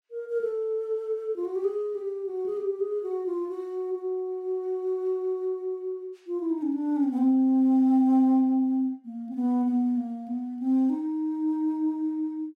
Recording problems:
none

